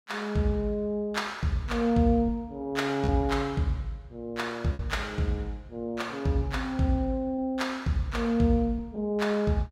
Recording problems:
packet loss; 1.6% of the sound replaced, filled with repeated pitch periods

